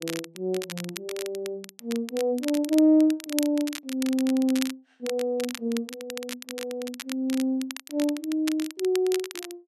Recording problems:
crackling; vinyl, SNR 11 dB

